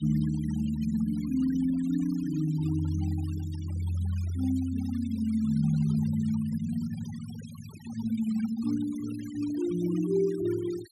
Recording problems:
noise reduction artefacts; signal-to-artefact ratio 21 dB

